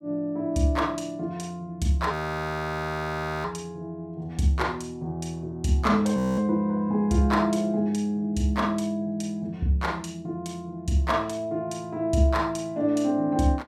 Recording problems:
audio freezing; at 2 s for 1.5 s and at 6 s

